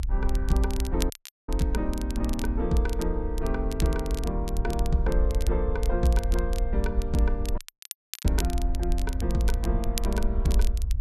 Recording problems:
electrical hum; 50 Hz, harmonics up to 1.1 kHz, SNR 23 dB
rumble; below 58 Hz, SNR 0 dB
crackling; vinyl, SNR 12 dB
dropout; at 1 s and at 7.5 s for 0.5 s

